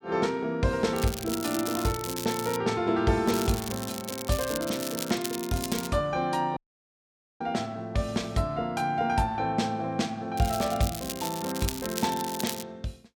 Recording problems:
crackle; from 1 to 2.5 s, from 3.5 to 6 s and from 10 to 13 s; loose cable, SNR 7 dB
dropout; at 6.5 s for 1 s

